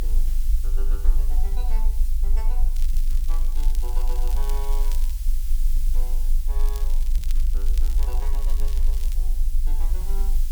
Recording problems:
background hiss; slope +4 dB per octave, SNR 1 dB
low-frequency rumble; below 34 Hz, strongest tone 24 Hz, SNR -18 dB
crackle; from 3 to 5 s and from 6.5 to 9 s; loose cable, SNR 2 dB

